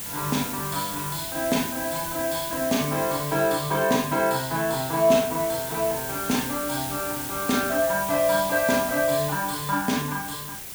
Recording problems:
hiss; SNR 6 dB

